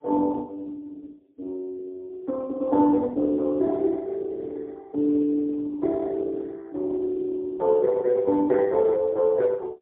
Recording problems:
telephone audio; 260 Hz to 2 kHz, AMR-NB, then MP3

